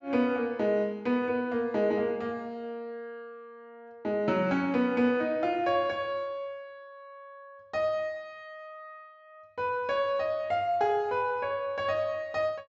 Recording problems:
treble cut off; nothing above 8 kHz

